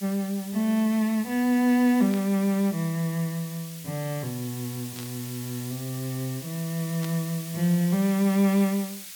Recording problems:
background hiss; slope +5 dB per octave, SNR 13 dB
static burst; at 2 s, at 5 s and at 7 s; peak -10 dB vs average level

